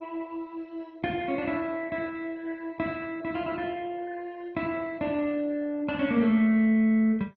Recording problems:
lossy codec; MP2, log-spectral distance 3 dB

